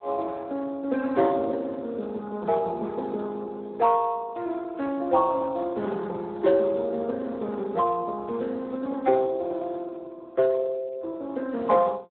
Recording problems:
phone line; 220 Hz to 2.1 kHz, Speex

